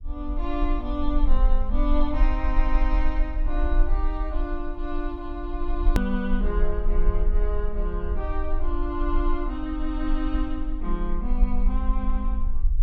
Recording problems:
rumble; below 40 Hz, strongest tone 18 Hz, SNR -3 dB
edit click; at 6 s

